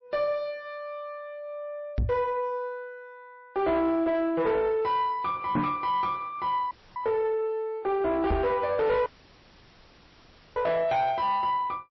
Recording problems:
codec artefacts; MP3, log-spectral distance 3 dB, nothing above 5.7 kHz
distorted audio; soft clipping, signal-to-distortion ratio 9 dB
knock on the microphone; at 2 s, at 5.5 s and at 8.5 s; peak +5 dB vs average level
audio cutting out; at 6.5 s and at 9 s for 1.5 s

